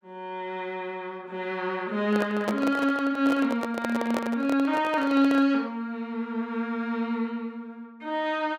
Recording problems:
microphone handling noise; from 2 to 5.5 s; peak +2 dB vs average level

